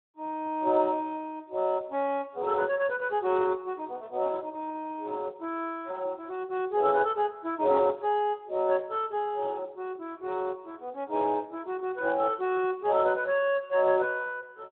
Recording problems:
phone line; 280 Hz to 3.7 kHz, Speex

